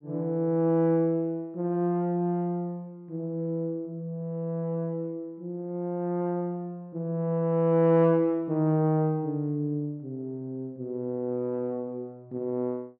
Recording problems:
none

